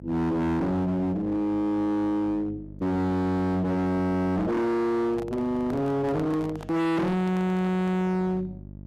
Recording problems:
distortion; hard clipping, uneven, signal-to-distortion ratio 6 dB
electrical hum; 50 Hz, harmonics up to 850 Hz, SNR 18 dB
microphone handling noise; from 5 to 8 s; peak -9 dB vs average level

